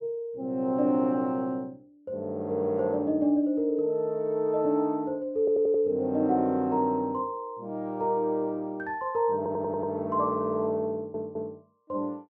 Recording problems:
stutter; at 5.5 s, at 9.5 s and at 11 s

